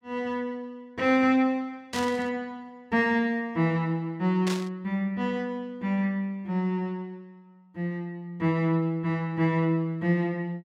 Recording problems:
burst of static; at 2 s and at 4.5 s; peak -3 dB vs average level

